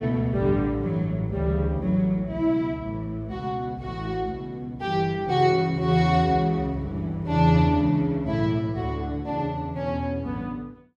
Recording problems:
none

